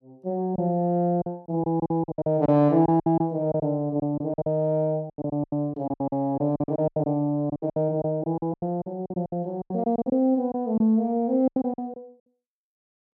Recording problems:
lost packets; 17% of the sound replaced, filled with silence

